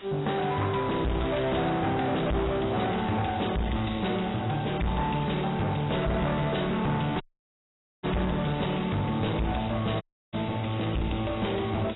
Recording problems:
lossy codec; AAC, log-spectral distance 9 dB, nothing above 3.9 kHz
distortion; hard clipping, uneven, signal-to-distortion ratio 5 dB
background hiss; SNR 19 dB
audio cutting out; at 7 s for 1 s and at 10 s

